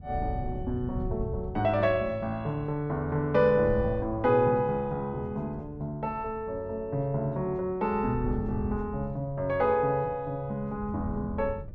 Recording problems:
wind noise; below 130 Hz, SNR 12 dB

